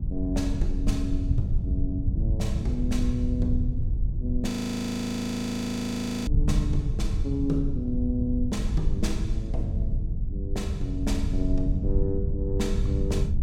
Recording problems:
low-frequency rumble; below 92 Hz, SNR -2 dB
frozen audio; at 4.5 s for 2 s

